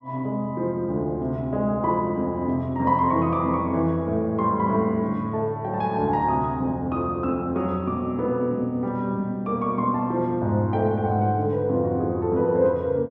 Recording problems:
none

